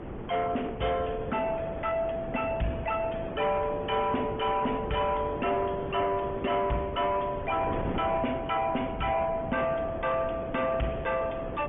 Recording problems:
treble missing; nothing above 3.1 kHz
lossy codec; Opus, log-spectral distance 3 dB
distortion; soft clipping, signal-to-distortion ratio 7 dB
wind noise; below 560 Hz, SNR 9 dB

